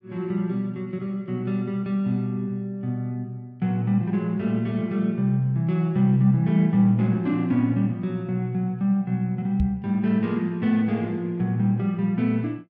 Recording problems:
microphone bump; at 9.5 s; peak +2 dB vs average level

